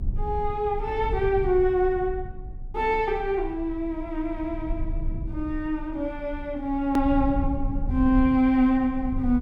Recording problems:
rumble; below 70 Hz, SNR 9 dB
hard cut with a click; at 7 s

